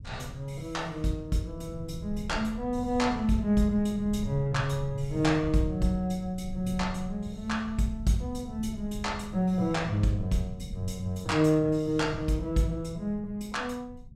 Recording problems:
low-frequency rumble; below 130 Hz, SNR 13 dB

